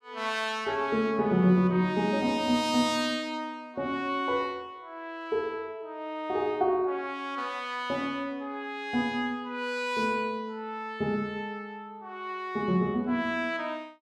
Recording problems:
none

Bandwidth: 14.5 kHz